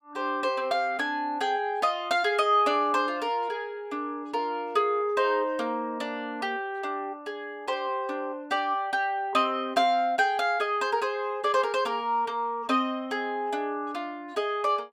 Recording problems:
none

